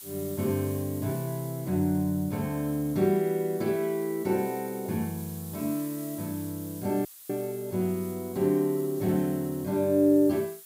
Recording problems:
background hiss; slope +3 dB per octave, SNR 16 dB
dropout; at 7 s

